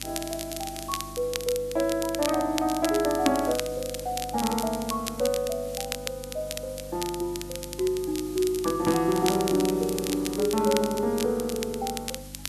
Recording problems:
hum; 50 Hz, harmonics up to 300 Hz, SNR 17 dB
hiss; slope 0 dB per octave, SNR 17 dB
crackling; vinyl, SNR 8 dB

